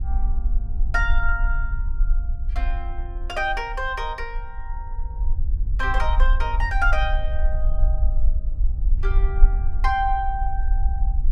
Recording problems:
rumble; below 46 Hz, SNR -2 dB

